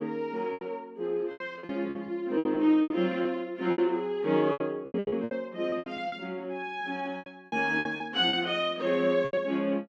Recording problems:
packet loss; 15% of the sound replaced, filled with repeated pitch periods

